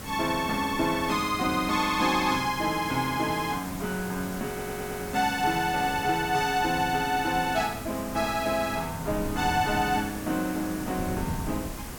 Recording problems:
background hiss; slope -4 dB per octave, SNR 12 dB
wind on the microphone; below 210 Hz, SNR 15 dB
stutter; at 4.5 s

